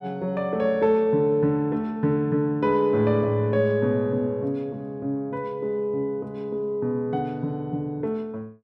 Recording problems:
none

